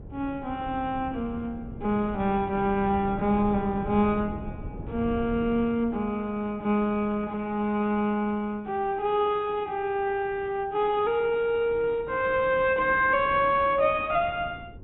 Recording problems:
low-pass filter; nothing above 3.8 kHz
wind on the microphone; below 250 Hz, SNR 15 dB

